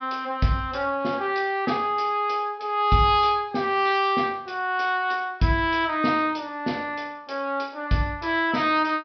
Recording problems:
treble missing; nothing above 5.5 kHz

